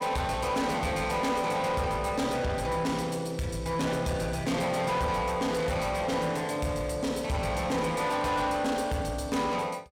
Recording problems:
distortion; soft clipping, signal-to-distortion ratio 10 dB

